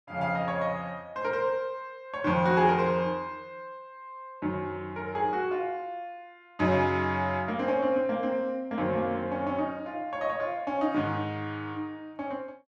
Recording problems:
none

